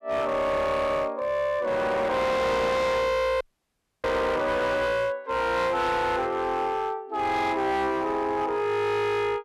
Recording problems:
distortion; hard clipping, signal-to-distortion ratio 8 dB
dropout; at 3.5 s for 0.5 s

